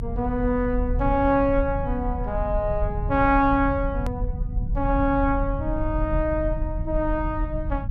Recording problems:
low-frequency rumble; below 88 Hz, strongest tone 42 Hz, SNR 5 dB
click at an edit; at 4 s

